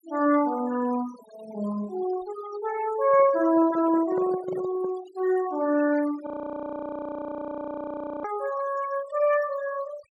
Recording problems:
noise reduction artefacts; signal-to-artefact ratio 16 dB
handling noise; from 3 to 5 s; peak -4 dB vs average level
frozen audio; at 6.5 s for 2 s

